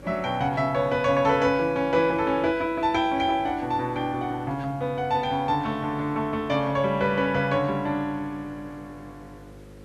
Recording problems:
hum; 50 Hz, harmonics up to 550 Hz, SNR 23 dB
background hiss; slope -5 dB per octave, SNR 29 dB

